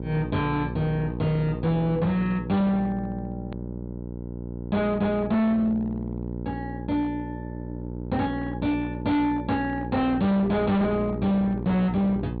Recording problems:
treble missing; nothing above 4.5 kHz
distortion; hard clipping, signal-to-distortion ratio 7 dB
hum; 60 Hz, harmonics up to 900 Hz, SNR 9 dB
edit click; at 3.5 s

